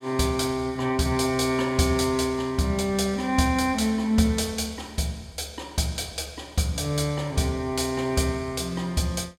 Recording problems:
none

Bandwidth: 16.5 kHz